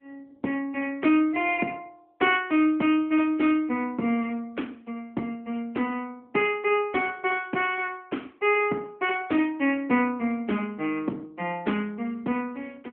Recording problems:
telephone audio; 170 Hz to 3.3 kHz, AMR-NB

